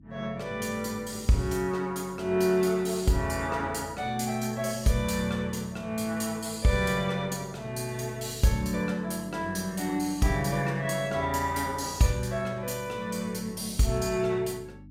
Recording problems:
electrical hum; 50 Hz, harmonics up to 300 Hz, SNR 22 dB

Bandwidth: 16 kHz